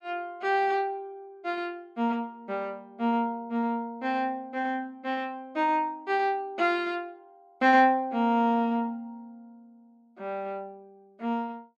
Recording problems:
none

